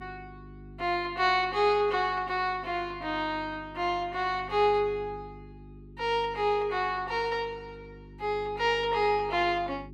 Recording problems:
hum; 50 Hz, harmonics up to 400 Hz, SNR 19 dB

